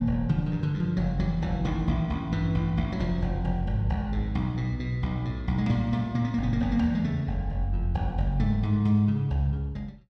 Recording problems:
none

